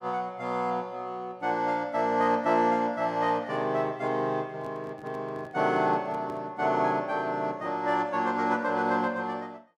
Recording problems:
handling noise; from 4.5 to 6.5 s; peak -13 dB vs average level

